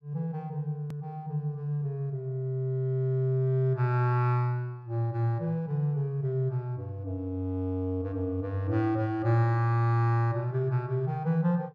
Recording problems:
hard cut with a click; at 1 s

